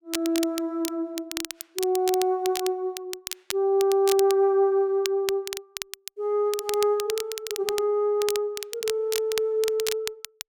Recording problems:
crackling; vinyl, SNR 9 dB

